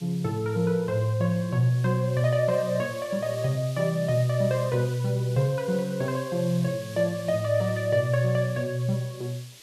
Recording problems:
hiss; SNR 19 dB

